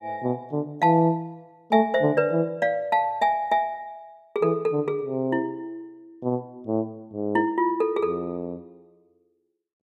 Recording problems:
none

